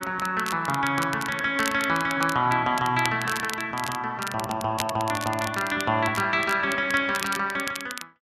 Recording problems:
crackle; vinyl, SNR 11 dB

